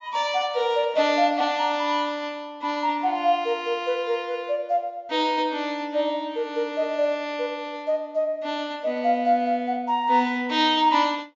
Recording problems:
treble cut off; nothing above 7.4 kHz

